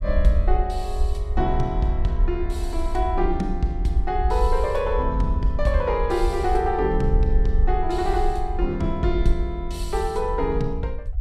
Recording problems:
rumble; below 58 Hz, SNR 2 dB

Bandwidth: 14.5 kHz